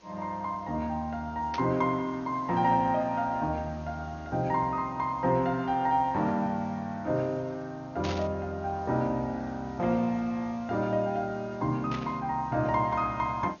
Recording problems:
lossy codec; MP2, log-spectral distance 2 dB, nothing above 6.5 kHz
background hiss; slope -4 dB per octave, SNR 27 dB
static burst; at 1.5 s, at 8 s and at 12 s; peak -5 dB vs average level

